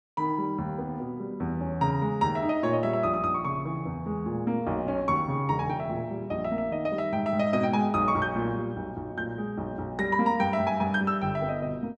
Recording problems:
none

